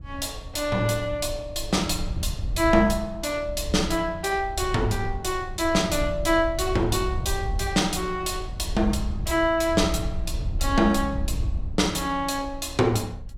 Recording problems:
wind noise; below 80 Hz, SNR 8 dB

